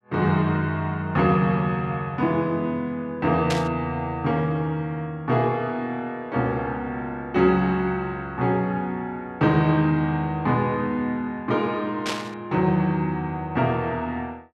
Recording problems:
burst of static; at 3.5 s and at 12 s; peak 0 dB vs average level

